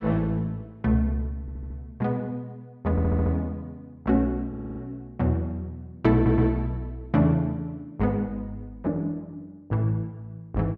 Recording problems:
audio stuttering; 4 times, first at 1.5 s

